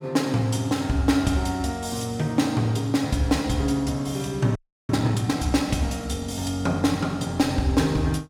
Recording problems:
frozen audio; at 4.5 s

